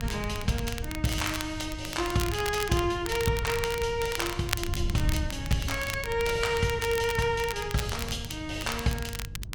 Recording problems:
hum; 50 Hz, harmonics up to 350 Hz, SNR 15 dB
wind noise; below 120 Hz, SNR 10 dB
crackle; vinyl, SNR 9 dB

